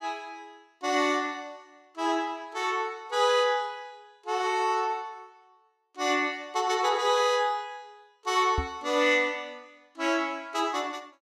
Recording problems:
microphone thump; at 8.5 s; peak 0 dB vs average level

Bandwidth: 14.5 kHz